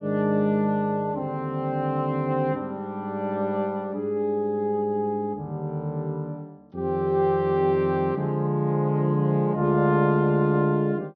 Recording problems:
treble cut off; nothing above 6.1 kHz

